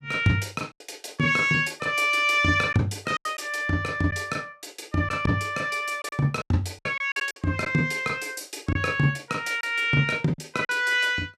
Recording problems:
packet loss; 6% of the sound replaced, filled with silence

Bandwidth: 14.5 kHz